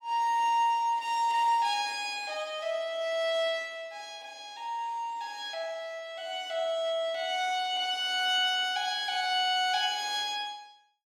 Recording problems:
none

